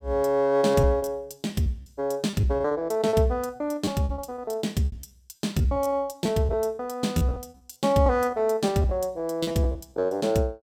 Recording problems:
packet loss; 16% of the sound replaced, filled with repeated pitch periods

